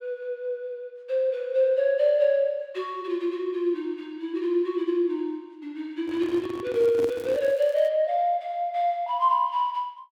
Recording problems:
microphone handling noise; from 6 to 7.5 s; peak -5 dB vs average level
crackle; from 6.5 to 8 s; loose cable, SNR 27 dB

